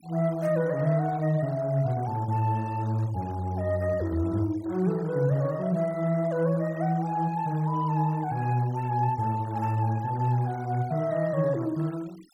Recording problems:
noise reduction artefacts; signal-to-artefact ratio 24 dB

